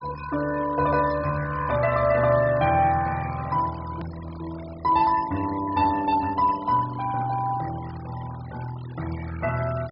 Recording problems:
treble missing; nothing above 5.5 kHz
noise reduction artefacts; signal-to-artefact ratio 17 dB
click at an edit; at 4 s

